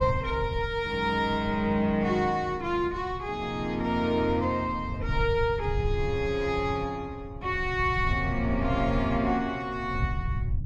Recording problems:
rumble; below 120 Hz, SNR 8 dB

